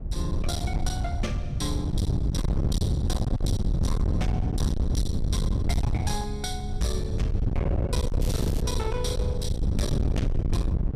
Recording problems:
distorted audio; hard clipping, signal-to-distortion ratio 9 dB
wind on the microphone; below 140 Hz, SNR -4 dB
crackle; at 8 s; loose cable, SNR 10 dB

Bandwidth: 14.5 kHz